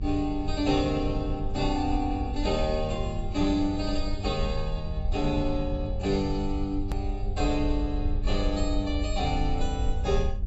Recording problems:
lossy compression; AAC, log-spectral distance 2 dB, nothing above 7.6 kHz
electrical hum; 50 Hz, harmonics up to 600 Hz, SNR 11 dB
low-frequency rumble; below 66 Hz, SNR 3 dB
hard cut with a click; at 7 s

